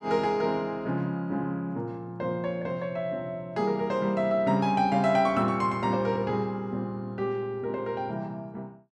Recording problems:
none

